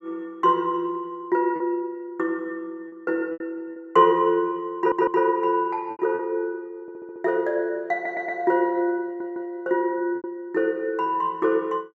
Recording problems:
packet loss; 4% of the sound replaced, filled with repeated pitch periods
audio stuttering; 4 times, first at 5 s

